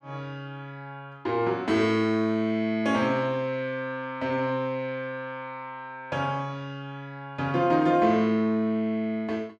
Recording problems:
none

